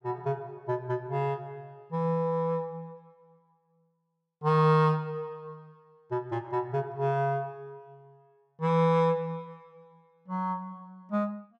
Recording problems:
none

